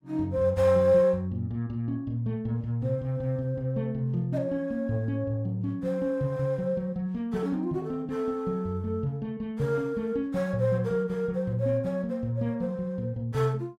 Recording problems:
none

